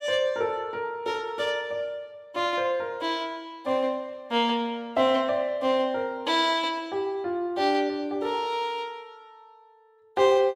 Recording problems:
none

